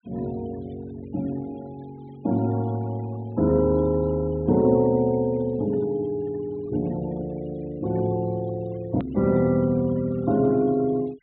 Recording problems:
treble missing; nothing above 4 kHz
denoising artefacts; signal-to-artefact ratio 25 dB
edit click; at 9 s

